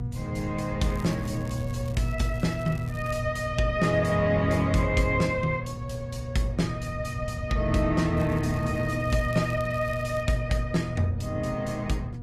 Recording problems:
lossy compression; Opus, log-spectral distance 2 dB, nothing above 14.3 kHz
hum; 60 Hz, harmonics up to 720 Hz, SNR 8 dB
low-frequency rumble; below 120 Hz, SNR 11 dB
crackle; from 1 to 3 s and from 8 to 10 s; loose cable, SNR 25 dB

